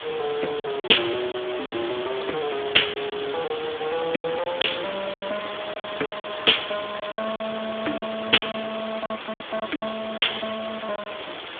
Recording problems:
phone line; 260 Hz to 3.5 kHz, Speex
background hiss; SNR 8 dB
packet loss; 10% of the sound replaced, filled with silence

